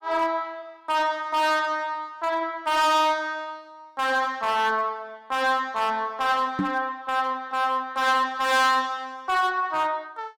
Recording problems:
distortion; hard clipping, signal-to-distortion ratio 7 dB
microphone bump; at 6.5 s; peak +2 dB vs average level

